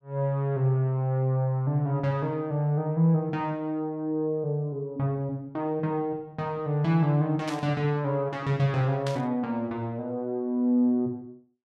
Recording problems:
static burst; at 7.5 s and at 9 s; peak -6 dB vs average level

